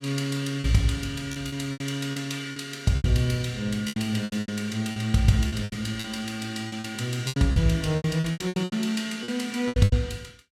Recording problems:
lost packets; 15% of the sound replaced, filled with repeated pitch periods

